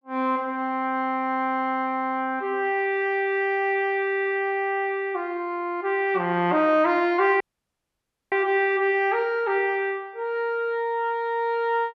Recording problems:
dropout; at 7.5 s for 1 s

